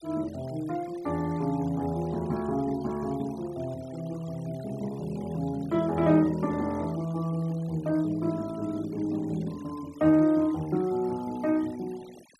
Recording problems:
noise reduction artefacts; signal-to-artefact ratio 23 dB

